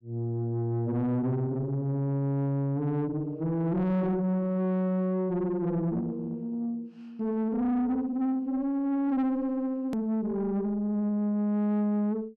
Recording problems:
distortion; soft clipping, signal-to-distortion ratio 10 dB
hard cut with a click; at 10 s

